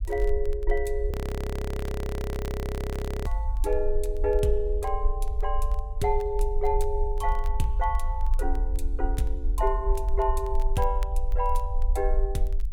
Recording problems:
low-frequency rumble; below 50 Hz, strongest tone 22 Hz, SNR 0 dB
crackle; vinyl, SNR 26 dB
audio freezing; at 1 s for 2 s

